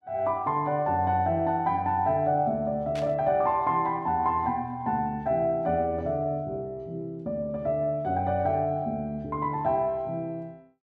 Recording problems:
static burst; at 3 s; peak -10 dB vs average level

